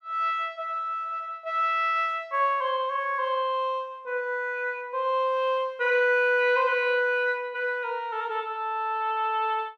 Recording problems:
none

